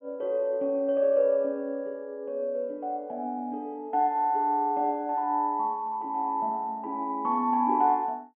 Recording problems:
treble cut off; nothing above 3.3 kHz

